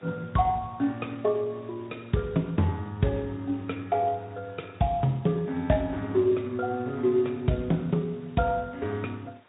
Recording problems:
low-pass filter; nothing above 3.8 kHz
lossy codec; Speex, log-spectral distance 4 dB
hiss; SNR 29 dB

